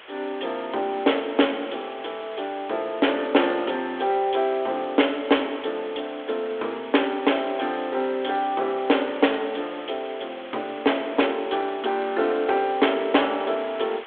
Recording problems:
phone line; 280 Hz to 3.5 kHz, G.726
background hiss; SNR 17 dB

